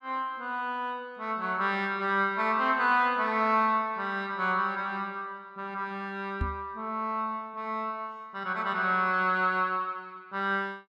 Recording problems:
microphone bump; at 6.5 s; peak +1 dB vs average level

